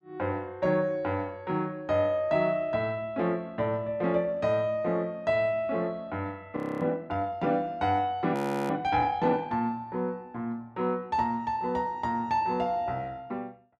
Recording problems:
audio freezing; at 6.5 s and at 8.5 s

